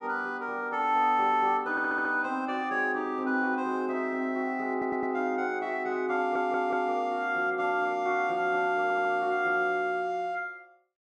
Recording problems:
audio stuttering; 4 times, first at 1.5 s

